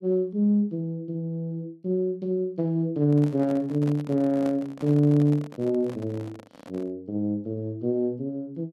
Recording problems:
handling noise; from 3 to 7 s; peak -8 dB vs average level

